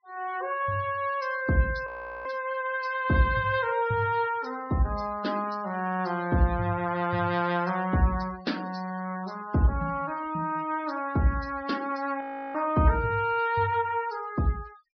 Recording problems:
treble cut off; nothing above 5.5 kHz
noise reduction artefacts; signal-to-artefact ratio 20 dB
audio freezing; at 2 s and at 12 s

